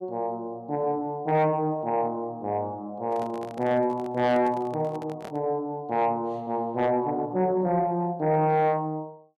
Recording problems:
distortion; soft clipping, signal-to-distortion ratio 12 dB
microphone handling noise; from 3 to 5.5 s; peak -10 dB vs average level

